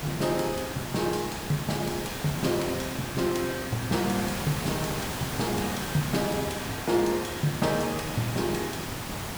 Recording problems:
hiss; slope -3 dB per octave, SNR 4 dB

